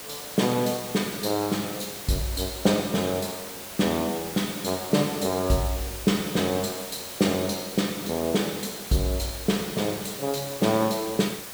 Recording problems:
hiss; slope -2 dB per octave, SNR 9 dB

